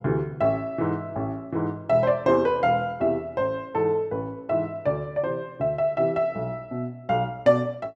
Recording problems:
none

